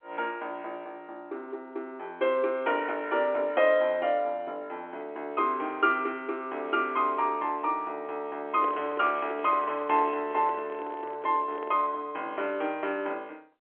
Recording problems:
telephone audio; 280 Hz to 3.4 kHz, G.711
handling noise; from 8.5 to 12 s; peak -4 dB vs average level

